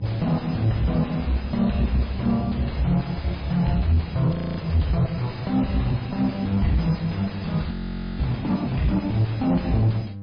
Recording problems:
lossy codec; MP3, log-spectral distance 4 dB, nothing above 5 kHz
distortion; soft clipping, signal-to-distortion ratio 4 dB
hum; 50 Hz, harmonics up to 500 Hz, SNR 16 dB
frozen audio; at 4.5 s and at 7.5 s

